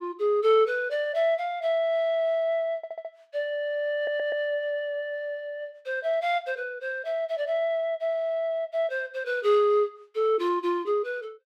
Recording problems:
audio stuttering; at 3 s and at 4 s

